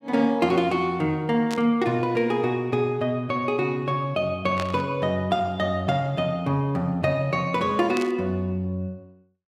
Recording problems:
static burst; at 1.5 s, at 4.5 s and at 8 s; peak -4 dB vs average level

